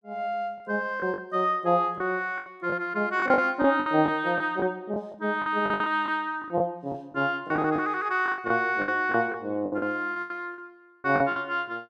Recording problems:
packet loss; 12% of the sound replaced, filled with the last packet

